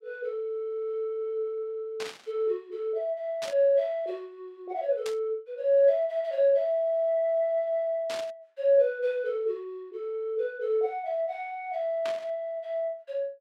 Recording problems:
burst of static; 5 times, first at 2 s; peak -5 dB vs average level

